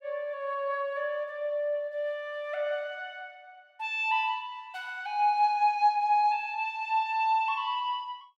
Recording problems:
none

